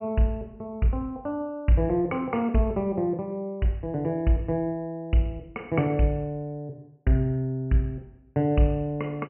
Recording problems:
treble missing; nothing above 3 kHz

